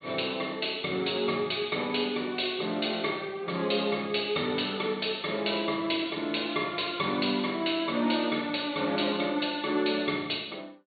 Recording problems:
treble cut off; nothing above 4.5 kHz

